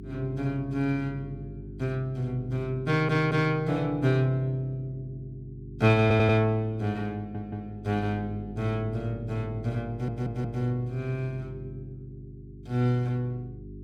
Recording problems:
mains hum; 50 Hz, harmonics up to 400 Hz, SNR 15 dB
audio stuttering; 4 times, first at 3 s

